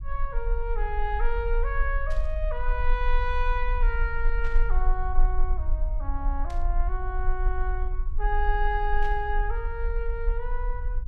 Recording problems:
rumble; below 40 Hz, strongest tone 20 Hz, SNR -2 dB
burst of static; 4 times, first at 2 s; peak -10 dB vs average level

